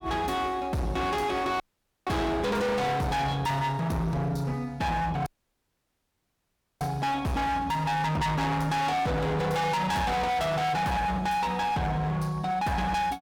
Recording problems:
distortion; hard clipping, signal-to-distortion ratio 6 dB
dropout; at 1.5 s and at 5.5 s for 1.5 s

